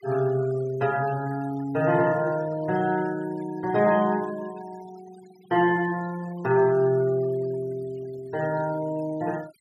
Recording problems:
denoising artefacts; signal-to-artefact ratio 22 dB

